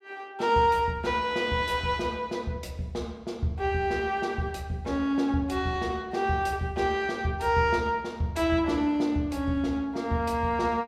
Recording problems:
none

